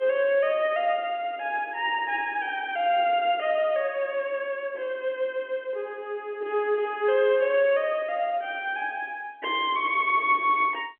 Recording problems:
telephone audio; 280 Hz to 3.3 kHz, G.711

